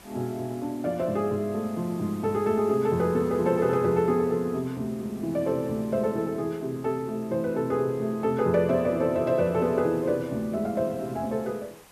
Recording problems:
hiss; slope -3 dB per octave, SNR 24 dB

